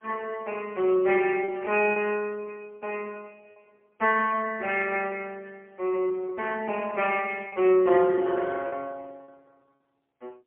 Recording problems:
phone line; 280 Hz to 3.1 kHz, AMR-NB, then MP3
lost packets; 2% of the sound replaced, filled with repeated pitch periods

